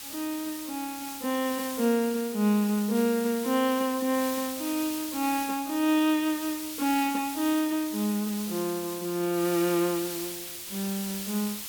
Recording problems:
hiss; slope +2 dB per octave, SNR 8 dB

